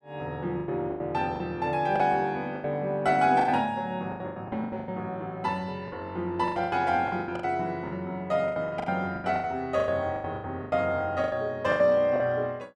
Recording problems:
lost packets; 16% of the sound replaced, filled with the last packet

